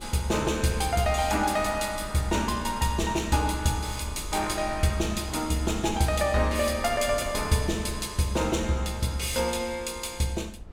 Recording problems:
wind on the microphone; below 110 Hz, SNR 16 dB

